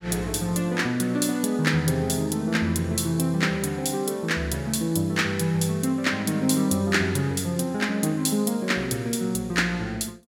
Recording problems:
none

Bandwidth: 16.5 kHz